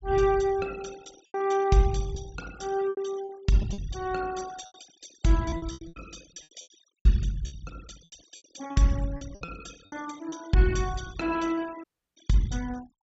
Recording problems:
low-pass filter; nothing above 8 kHz
denoising artefacts; signal-to-artefact ratio 20 dB
packet loss; 12% of the sound replaced, filled with repeated pitch periods
audio cutting out; at 12 s

